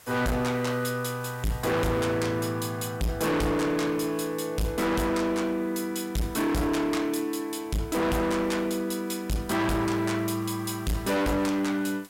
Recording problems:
distortion; hard clipping, signal-to-distortion ratio 6 dB
hiss; slope -1 dB per octave, SNR 24 dB

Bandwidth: 16 kHz